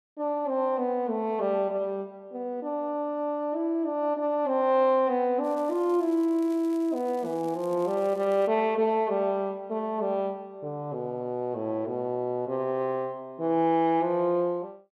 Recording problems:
crackling; from 5.5 to 8.5 s; loose cable, SNR 27 dB

